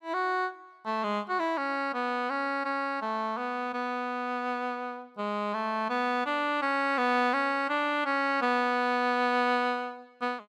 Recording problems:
none

